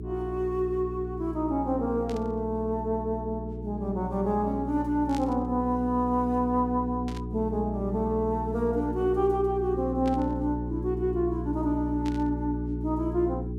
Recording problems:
hum; 60 Hz, harmonics up to 420 Hz, SNR 7 dB
static burst; 5 times, first at 2 s; peak -10 dB vs average level

